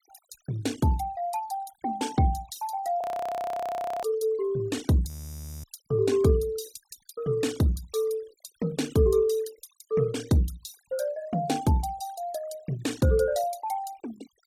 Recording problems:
noise reduction artefacts; signal-to-artefact ratio 20 dB
audio freezing; at 3 s for 1 s and at 5 s for 0.5 s

